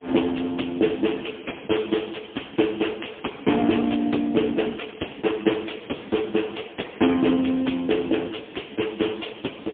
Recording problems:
phone line; 220 Hz to 3.4 kHz, AMR-NB, then MP3

